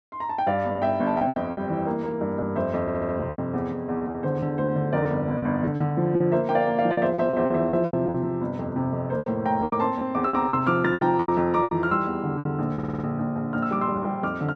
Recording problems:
lost packets; 11% of the sound replaced, filled with repeated pitch periods
stutter; at 3 s and at 13 s

